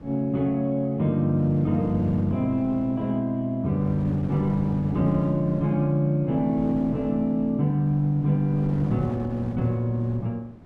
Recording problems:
wind on the microphone; below 350 Hz, SNR 14 dB

